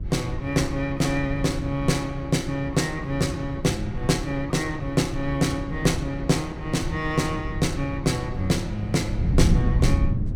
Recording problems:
wind noise; below 140 Hz, SNR 5 dB

